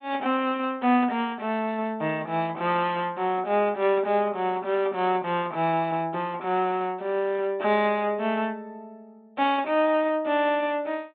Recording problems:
treble missing; nothing above 4 kHz

